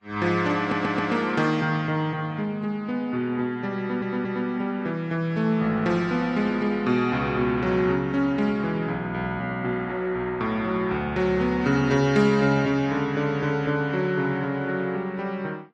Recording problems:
lossy codec; Vorbis, log-spectral distance 2 dB, nothing above 13.1 kHz
audio stuttering; at 0.5 s and at 4 s

